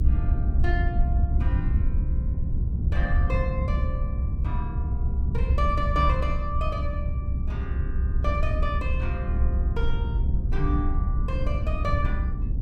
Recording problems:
low-frequency rumble; below 82 Hz, SNR -7 dB

